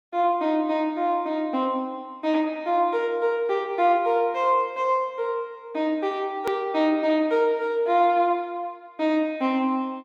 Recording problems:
hard cut with a click; at 6.5 s

